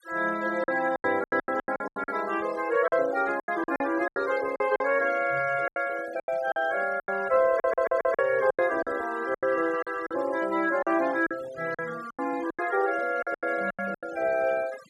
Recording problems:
noise reduction artefacts; signal-to-artefact ratio 20 dB
lost packets; 14% of the sound replaced, filled with silence
audio stuttering; at 7.5 s

